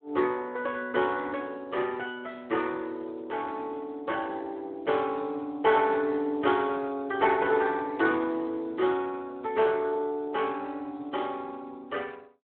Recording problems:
telephone audio; 240 Hz to 3.7 kHz, Speex

